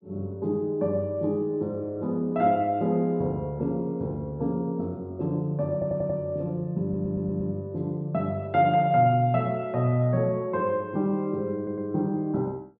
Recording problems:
treble missing; nothing above 5.5 kHz
stutter; at 5.5 s, at 7 s and at 12 s

